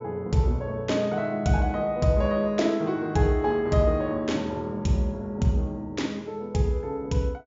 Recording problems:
low-pass filter; nothing above 7.2 kHz

